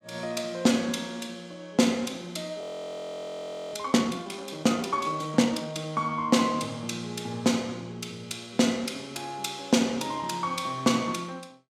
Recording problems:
audio freezing; at 2.5 s for 1 s

